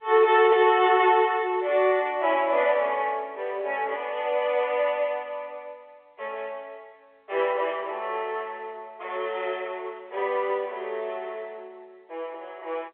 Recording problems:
phone line; 320 Hz to 3.5 kHz, G.711

